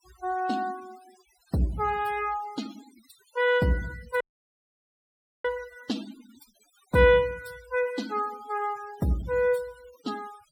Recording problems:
denoising artefacts; signal-to-artefact ratio 21 dB
audio cutting out; at 4 s for 1 s

